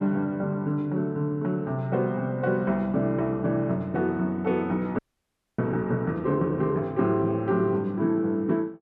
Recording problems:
audio freezing; at 5 s for 0.5 s

